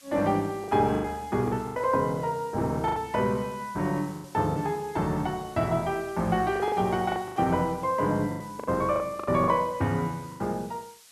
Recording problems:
hiss; slope +2 dB per octave, SNR 23 dB
lost packets; 10% of the sound replaced, filled with the last packet

